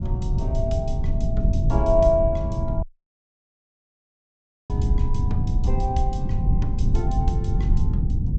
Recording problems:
treble missing; nothing above 8 kHz
low-frequency rumble; below 110 Hz, SNR -3 dB
audio cutting out; at 3 s for 2 s

